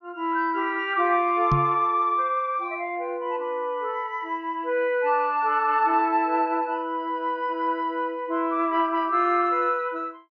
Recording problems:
treble cut off; nothing above 6.6 kHz
microphone thump; at 1.5 s; peak +3 dB vs average level

